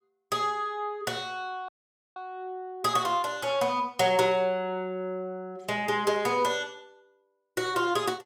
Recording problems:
audio cutting out; at 1.5 s

